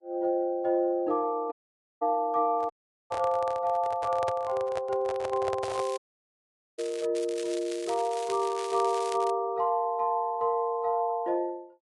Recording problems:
lossy codec; Vorbis, log-spectral distance 2 dB
audio cutting out; at 1.5 s, at 2.5 s and at 6 s for 1 s
microphone handling noise; from 2.5 to 6 s; peak -2 dB vs average level
crackling; from 5.5 to 7 s and from 7 to 9.5 s; loose cable, SNR 15 dB

